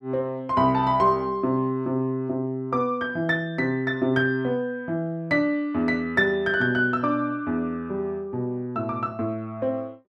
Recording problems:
none

